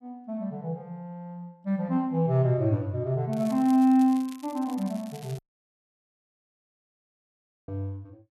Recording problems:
crackling; from 3.5 to 5.5 s; loose cable, SNR 23 dB
dropout; at 5.5 s for 2.5 s

